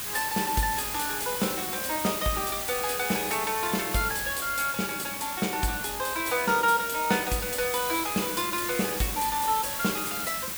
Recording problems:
hiss; slope 0 dB per octave, SNR 3 dB

